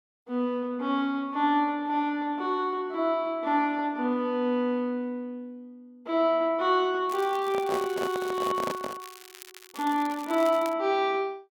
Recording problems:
crackle; from 7 to 11 s; loose cable, SNR 19 dB
handling noise; from 7.5 to 9 s; peak -1 dB vs average level

